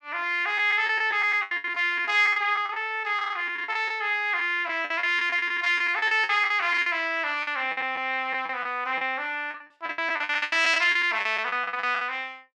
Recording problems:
packet loss; 16% of the sound replaced, filled with the last packet

